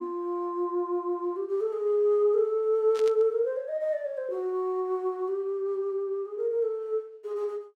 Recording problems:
burst of static; at 3 s; peak -9 dB vs average level

